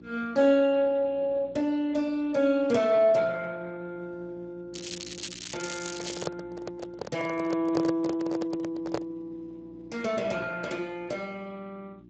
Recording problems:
lossy codec; Speex, log-spectral distance 5 dB
hum; 60 Hz, harmonics up to 360 Hz, SNR 22 dB
crackling; from 4.5 to 6.5 s; loose cable, SNR 10 dB
microphone handling noise; from 6 to 9 s; peak +2 dB vs average level

